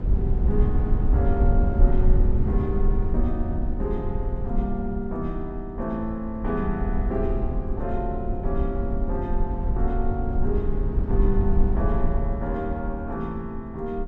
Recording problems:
low-frequency rumble; below 70 Hz, SNR -3 dB

